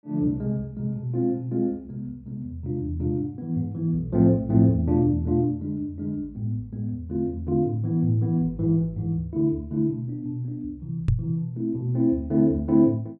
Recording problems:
knock on the microphone; at 11 s; peak +7 dB vs average level

